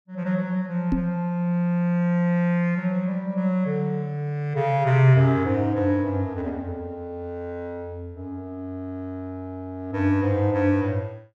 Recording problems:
microphone bump; at 1 s; peak +4 dB vs average level

